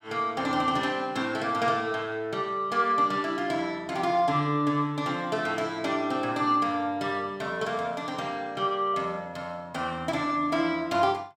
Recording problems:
none

